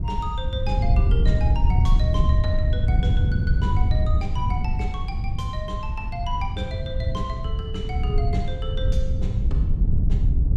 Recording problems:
wind on the microphone; below 94 Hz, SNR -9 dB

